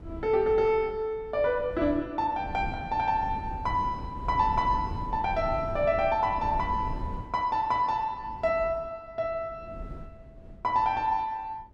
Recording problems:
wind noise; below 190 Hz, SNR 12 dB

